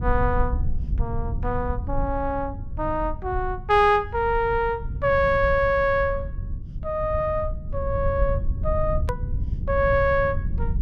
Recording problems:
low-frequency rumble; below 88 Hz, SNR 6 dB
click at an edit; at 9 s

